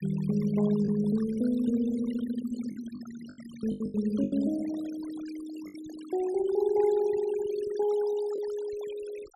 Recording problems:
noise reduction artefacts; signal-to-artefact ratio 18 dB
packet loss; 5% of the sound replaced, filled with the last packet

